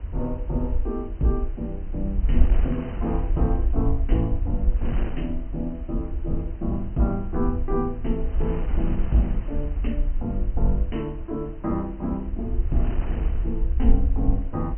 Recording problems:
low-pass filter; nothing above 3.1 kHz
rumble; below 56 Hz, SNR 0 dB
wind on the microphone; below 570 Hz, SNR 13 dB

